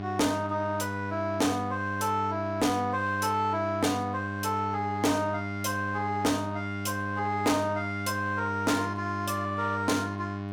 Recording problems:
distorted audio; soft clipping, signal-to-distortion ratio 11 dB
electrical hum; 50 Hz, harmonics up to 1.8 kHz, SNR 6 dB

